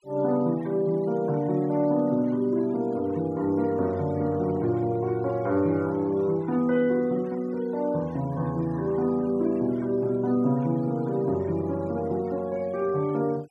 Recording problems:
noise reduction artefacts; signal-to-artefact ratio 25 dB

